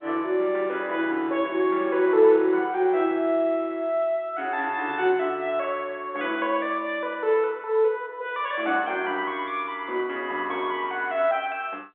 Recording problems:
phone line; 280 Hz to 3.9 kHz, G.711

